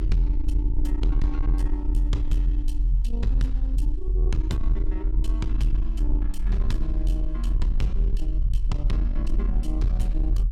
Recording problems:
distorted audio; soft clipping, signal-to-distortion ratio 11 dB
low-frequency rumble; below 44 Hz, strongest tone 42 Hz, SNR -6 dB

